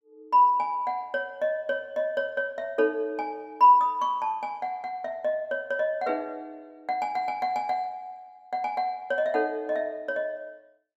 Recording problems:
none

